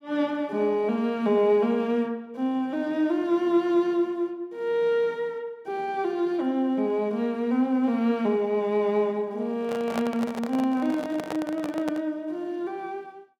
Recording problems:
microphone handling noise; from 9.5 to 12 s; peak -2 dB vs average level

